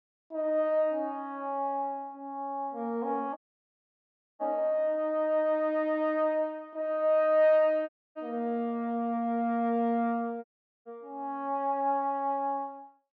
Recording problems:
audio cutting out; at 3.5 s for 1 s, at 8 s and at 10 s

